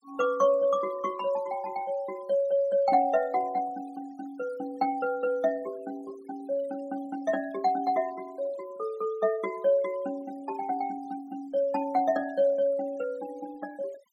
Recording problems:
noise reduction artefacts; signal-to-artefact ratio 24 dB

